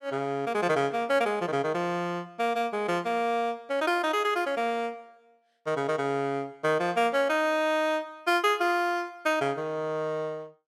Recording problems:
none

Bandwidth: 16 kHz